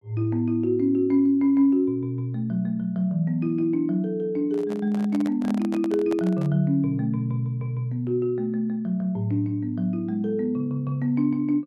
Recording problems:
handling noise; from 4.5 to 6.5 s; peak -7 dB vs average level

